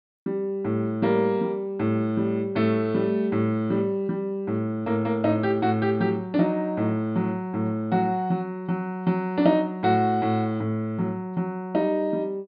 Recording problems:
treble cut off; nothing above 5 kHz

